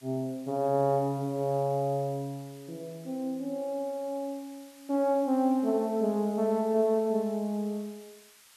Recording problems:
background hiss; slope +3 dB per octave, SNR 25 dB

